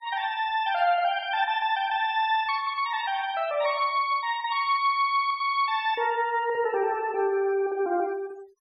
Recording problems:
noise reduction artefacts; signal-to-artefact ratio 25 dB

